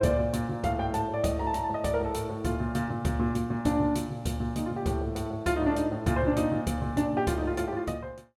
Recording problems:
none

